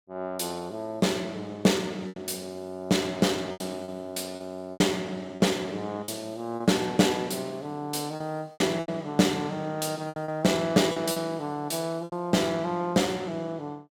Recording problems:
lost packets; 7% of the sound replaced, filled with repeated pitch periods

